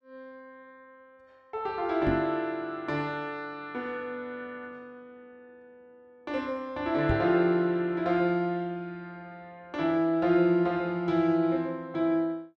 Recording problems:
microphone thump; at 2 s and at 7 s; peak +2 dB vs average level

